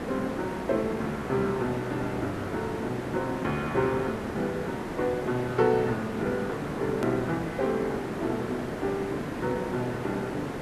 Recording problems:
background hiss; SNR 4 dB
edit click; at 7 s

